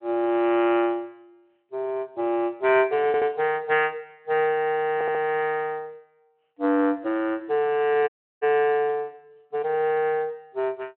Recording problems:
telephone audio; 220 Hz to 3.1 kHz, Speex
stutter; at 3 s and at 5 s
dropout; at 8 s

